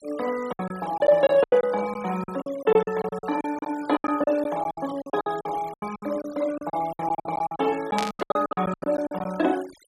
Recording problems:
denoising artefacts; signal-to-artefact ratio 20 dB
lost packets; 19% of the sound replaced, filled with silence
burst of static; at 8 s; peak -1 dB vs average level

